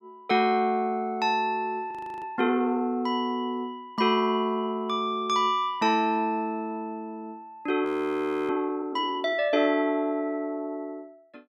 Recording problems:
frozen audio; at 2 s and at 8 s for 0.5 s

